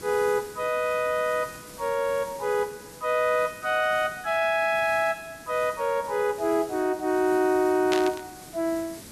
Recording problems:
background hiss; SNR 18 dB
burst of static; at 8 s; peak +1 dB vs average level

